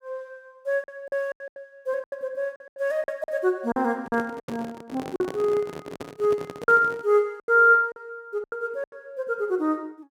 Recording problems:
lost packets; 11% of the sound replaced, filled with silence
handling noise; from 4 to 7 s; peak -6 dB vs average level

